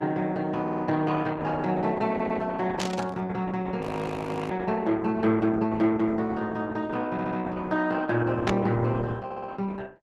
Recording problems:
codec artefacts; Opus, log-spectral distance 4 dB, nothing above 12 kHz
audio stuttering; 4 times, first at 0.5 s
burst of static; at 3 s, at 4.5 s and at 8.5 s; peak +1 dB vs average level
audio freezing; at 4 s for 0.5 s

